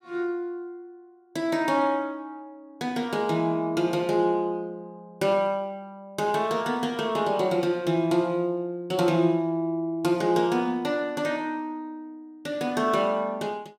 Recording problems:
none

